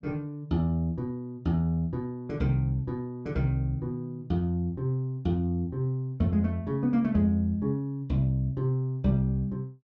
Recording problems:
none

